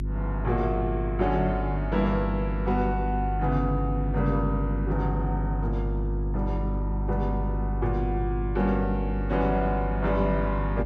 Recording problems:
hum; 50 Hz, harmonics up to 350 Hz, SNR 1 dB

